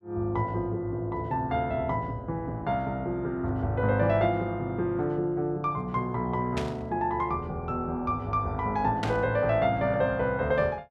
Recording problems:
static burst; at 6.5 s and at 9 s; peak -2 dB vs average level

